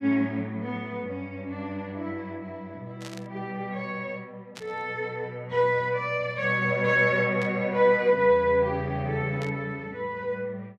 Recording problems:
static burst; 4 times, first at 3 s; peak -9 dB vs average level

